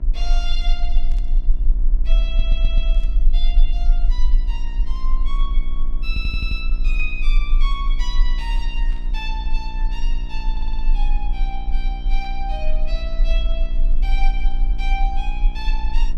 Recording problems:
hum; 60 Hz, harmonics up to 1.4 kHz, SNR 9 dB
low-frequency rumble; below 36 Hz, strongest tone 18 Hz, SNR -9 dB
burst of static; 5 times, first at 1 s; peak -12 dB vs average level
audio stuttering; at 2.5 s, at 6 s and at 11 s

